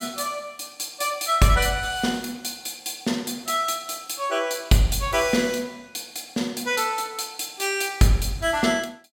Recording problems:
none

